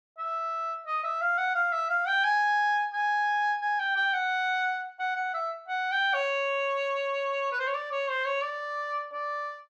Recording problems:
none

